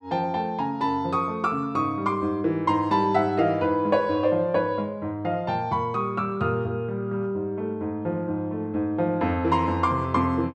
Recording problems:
none

